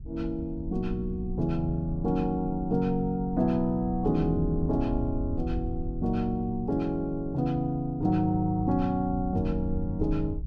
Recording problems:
wind on the microphone; below 78 Hz, SNR 10 dB

